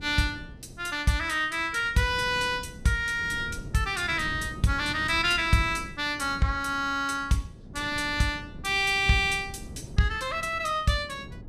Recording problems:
wind noise; below 230 Hz, SNR 16 dB

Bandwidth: 14.5 kHz